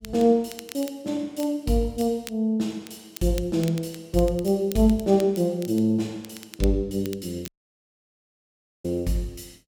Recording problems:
crackling; vinyl, SNR 19 dB
audio cutting out; at 7.5 s for 1.5 s

